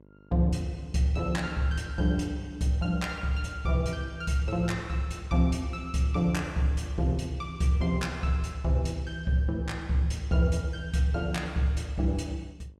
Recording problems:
electrical hum; 50 Hz, harmonics up to 1.1 kHz, SNR 29 dB

